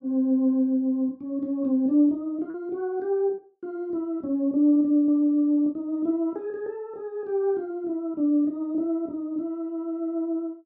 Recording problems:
packet loss; 1.6% of the sound replaced, filled with repeated pitch periods

